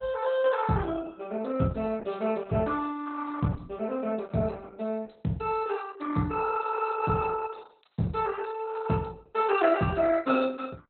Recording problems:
lossy codec; Opus, log-spectral distance 5 dB, nothing above 4 kHz

